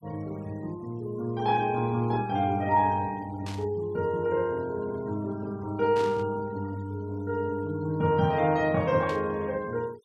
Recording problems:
denoising artefacts; signal-to-artefact ratio 26 dB
burst of static; at 3.5 s, at 6 s and at 9 s; peak -10 dB vs average level

